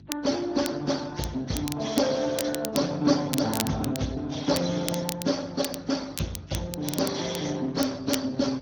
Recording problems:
lossy compression; Vorbis, then Speex, log-spectral distance 5 dB
hum; 50 Hz, harmonics up to 350 Hz, SNR 21 dB
crackling; vinyl, SNR 9 dB

